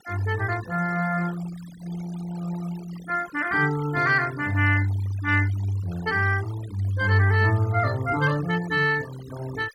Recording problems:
noise reduction artefacts; signal-to-artefact ratio 19 dB

